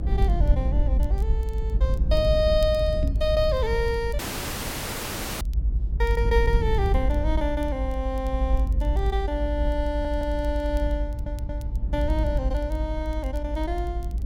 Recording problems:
rumble; below 60 Hz, SNR -1 dB
crackle; vinyl, SNR 28 dB
microphone thump; at 3 s; peak +2 dB vs average level
audio cutting out; at 4 s for 1 s
stutter; at 10 s and at 11 s

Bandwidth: 16.5 kHz